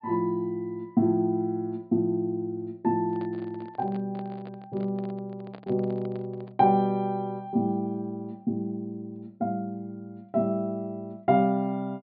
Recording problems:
low-pass filter; nothing above 4.9 kHz
microphone handling noise; from 3 to 6.5 s; peak -12 dB vs average level

